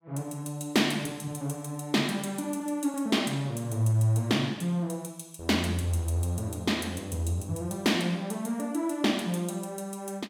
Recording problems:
none

